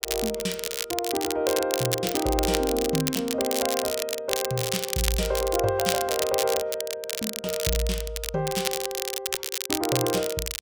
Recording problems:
crackling; vinyl, SNR 2 dB

